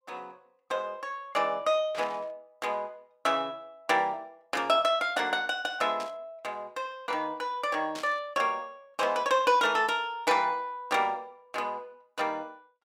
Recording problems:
static burst; at 2 s, at 6 s and at 8 s; peak -8 dB vs average level

